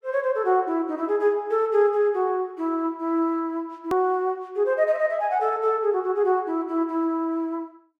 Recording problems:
hard cut with a click; at 4 s

